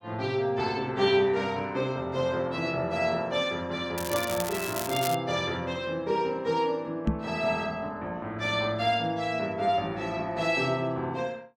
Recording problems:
crackle; from 4 to 5 s; loose cable, SNR 8 dB
microphone bump; at 7 s; peak +6 dB vs average level

